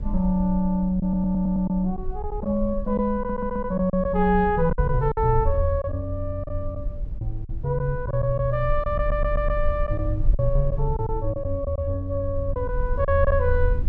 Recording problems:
low-frequency rumble; below 52 Hz, strongest tone 22 Hz, SNR 7 dB
packet loss; 6% of the sound replaced, filled with silence
audio stuttering; at 1 s, at 3 s and at 9 s

